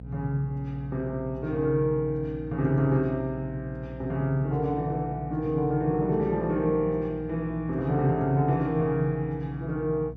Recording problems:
electrical hum; 60 Hz, harmonics up to 540 Hz, SNR 14 dB

